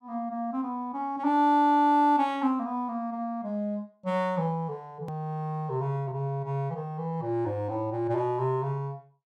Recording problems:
hard cut with a click; at 5 s

